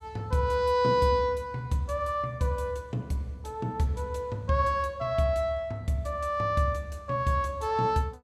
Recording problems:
none

